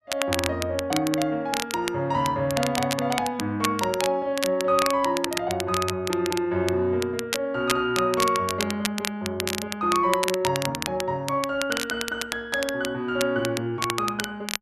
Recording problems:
crackling; vinyl, SNR 6 dB

